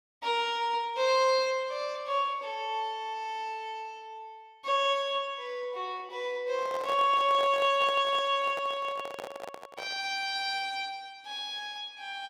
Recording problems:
microphone handling noise; from 6.5 to 10 s; peak -6 dB vs average level

